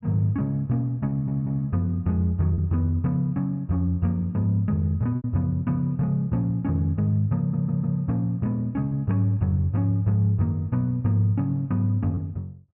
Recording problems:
packet loss; 1.5% of the sound replaced, filled with repeated pitch periods
audio stuttering; at 1 s and at 7.5 s

